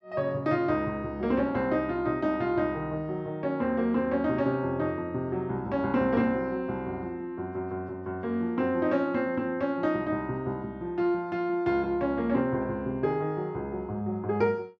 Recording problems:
none

